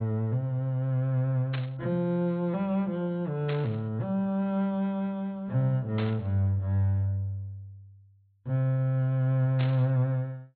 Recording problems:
low-pass filter; nothing above 4.3 kHz
static burst; 4 times, first at 1.5 s; peak -5 dB vs average level

